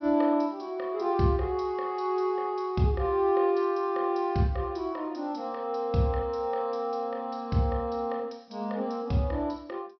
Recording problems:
low-pass filter; nothing above 5.5 kHz

